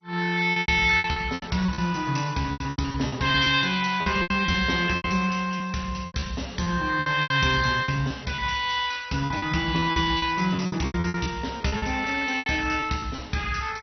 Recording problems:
codec artefacts; MP2, log-spectral distance 5 dB, nothing above 6 kHz
lost packets; 15% of the sound replaced, filled with repeated pitch periods

